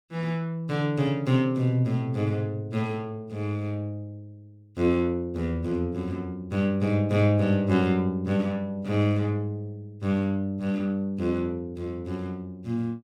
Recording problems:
none

